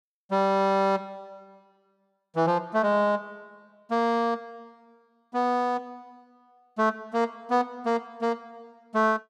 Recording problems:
none

